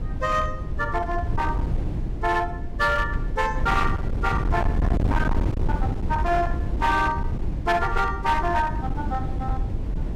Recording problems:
distortion; hard clipping, signal-to-distortion ratio 8 dB
wind noise; below 140 Hz, SNR 2 dB

